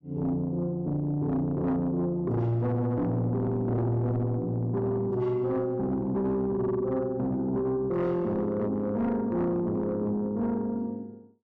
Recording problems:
distorted audio; soft clipping, signal-to-distortion ratio 11 dB

